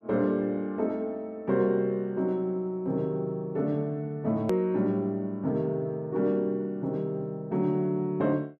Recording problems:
click at an edit; at 4.5 s

